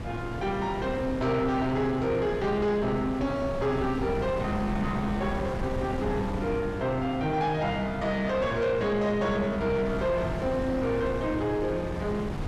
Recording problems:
distorted audio; soft clipping, signal-to-distortion ratio 12 dB
wind on the microphone; below 480 Hz, SNR 7 dB

